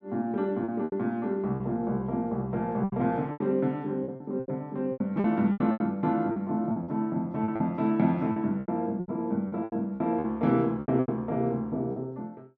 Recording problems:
packet loss; 13% of the sound replaced, filled with repeated pitch periods

